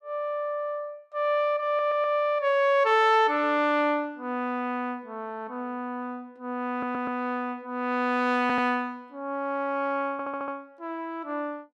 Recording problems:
stutter; 4 times, first at 1.5 s

